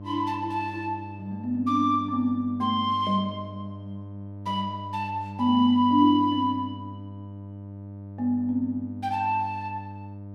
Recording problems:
hum; 50 Hz, harmonics up to 900 Hz, SNR 14 dB

